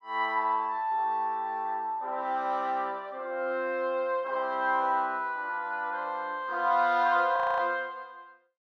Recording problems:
audio freezing; at 7.5 s

